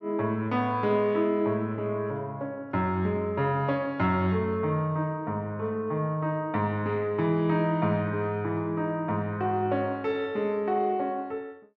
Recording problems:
none

